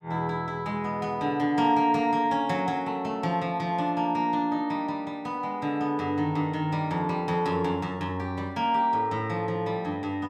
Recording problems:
none

